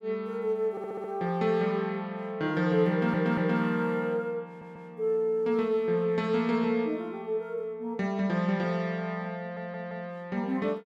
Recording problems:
audio stuttering; 4 times, first at 0.5 s

